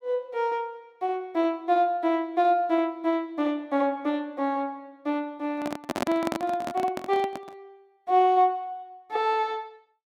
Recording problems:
handling noise; from 5.5 to 7.5 s; peak +2 dB vs average level

